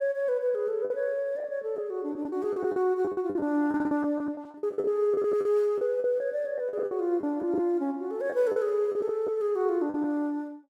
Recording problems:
lost packets; 12% of the sound replaced, filled with the last packet

